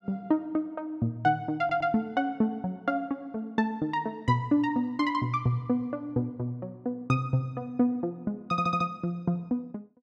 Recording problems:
stutter; at 1.5 s and at 8.5 s

